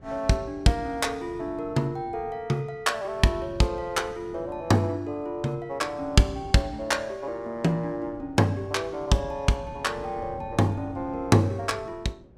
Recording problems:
wind on the microphone; below 330 Hz, SNR 19 dB

